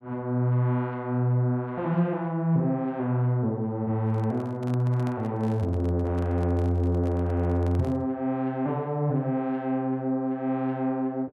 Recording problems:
handling noise; from 4 to 8 s; peak -10 dB vs average level

